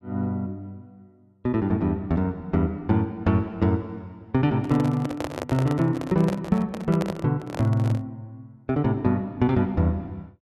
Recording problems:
microphone handling noise; from 4.5 to 8 s; peak -2 dB vs average level

